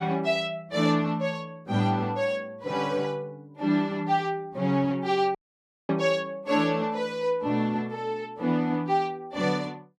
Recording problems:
audio cutting out; at 5.5 s for 0.5 s

